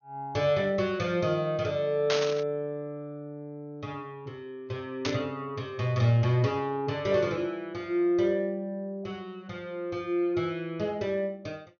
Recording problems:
treble missing; nothing above 6.7 kHz
burst of static; at 2 s and at 5 s; peak +3 dB vs average level

